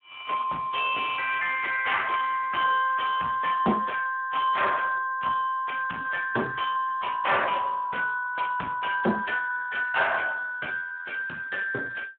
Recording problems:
telephone audio; 260 Hz to 3.4 kHz, Speex
distortion; soft clipping, signal-to-distortion ratio 11 dB

